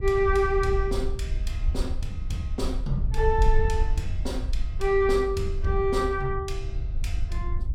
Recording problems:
wind noise; below 60 Hz, SNR 3 dB

